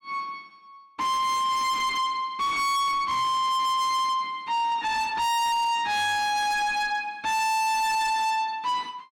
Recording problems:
distorted audio; soft clipping, signal-to-distortion ratio 7 dB

